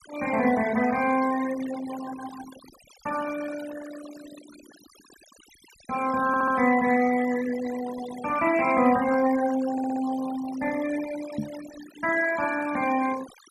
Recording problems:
denoising artefacts; signal-to-artefact ratio 15 dB
audio stuttering; at 6.5 s and at 9.5 s
microphone thump; at 11 s; peak -1 dB vs average level

